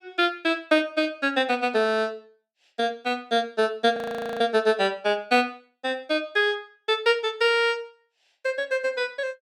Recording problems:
frozen audio; at 4 s

